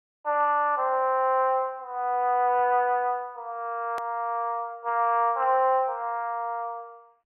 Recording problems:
telephone audio; 320 Hz to 3.2 kHz, G.726
click at an edit; at 4 s

